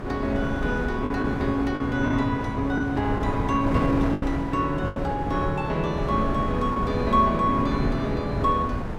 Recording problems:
wind on the microphone; below 410 Hz, SNR 5 dB
lost packets; 4% of the sound replaced, filled with the last packet

